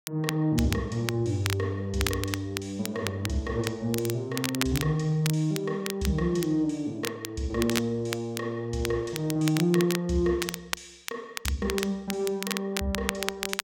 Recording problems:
crackle; vinyl, SNR 7 dB

